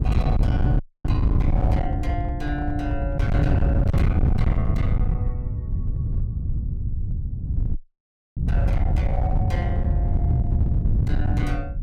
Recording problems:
distortion; hard clipping, signal-to-distortion ratio 7 dB
wind noise; below 120 Hz, SNR -8 dB
audio freezing; at 1 s and at 8 s for 0.5 s

